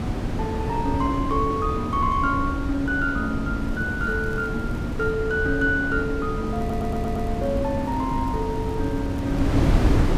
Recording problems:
wind noise; below 290 Hz, SNR 1 dB
crackling; from 3.5 to 5 s and from 6.5 to 9.5 s; loose cable, SNR 29 dB
audio stuttering; at 6.5 s

